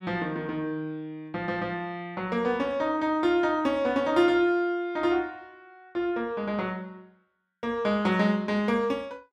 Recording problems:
none

